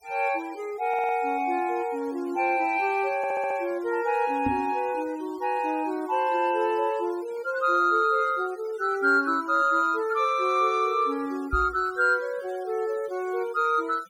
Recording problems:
noise reduction artefacts; signal-to-artefact ratio 25 dB
audio stuttering; at 1 s and at 3 s
microphone thump; at 4.5 s and at 12 s; peak -1 dB vs average level

